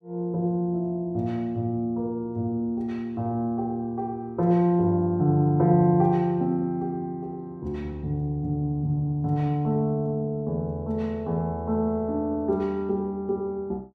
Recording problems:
none

